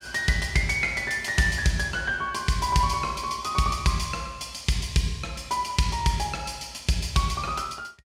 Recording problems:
none

